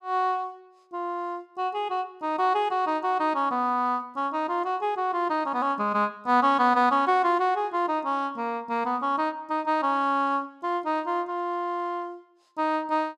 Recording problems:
none

